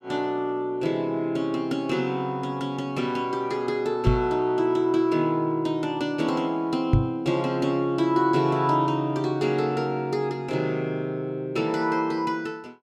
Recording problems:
microphone bump; at 4 s and at 7 s; peak +9 dB vs average level

